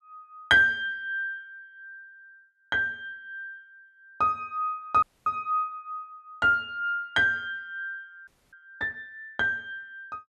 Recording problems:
frozen audio; at 5 s and at 8.5 s

